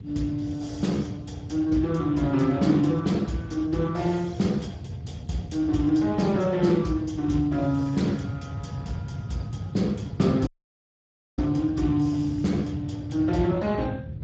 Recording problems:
lossy codec; Speex, log-spectral distance 3 dB, nothing above 7.3 kHz
rumble; below 160 Hz, SNR 11 dB
audio cutting out; at 10 s for 1 s

